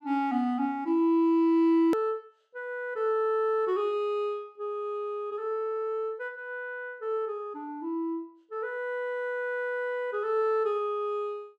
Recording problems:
hard cut with a click; at 2 s

